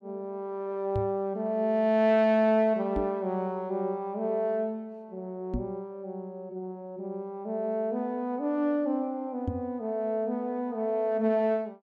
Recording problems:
knock on the microphone; 4 times, first at 1 s; peak +1 dB vs average level

